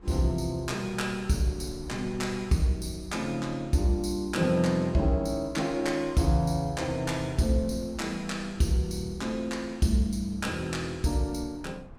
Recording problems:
low-frequency rumble; below 170 Hz, SNR 22 dB

